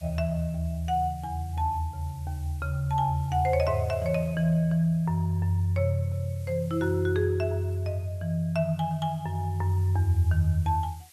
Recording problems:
hiss; slope +2 dB per octave, SNR 27 dB

